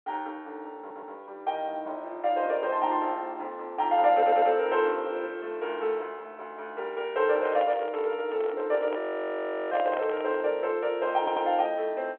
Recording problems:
phone line; 320 Hz to 3.5 kHz, G.711
audio stuttering; at 1 s, at 4 s and at 11 s
microphone handling noise; from 7 to 11 s; peak -4 dB vs average level
frozen audio; at 9 s for 0.5 s

